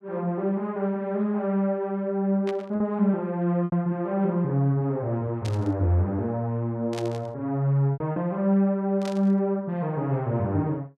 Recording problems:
lost packets; 2% of the sound replaced, filled with repeated pitch periods
static burst; 4 times, first at 2.5 s; peak -8 dB vs average level

